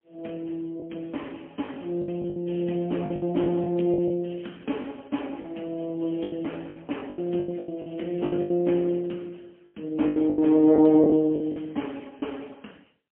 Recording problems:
telephone audio; 130 Hz to 3.3 kHz, AMR-NB, then MP3
packet loss; 11% of the sound replaced, filled with the last packet

